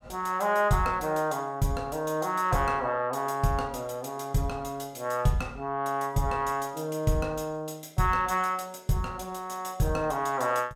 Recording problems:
none

